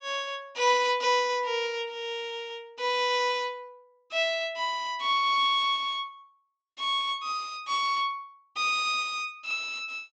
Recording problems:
treble missing; nothing above 8 kHz

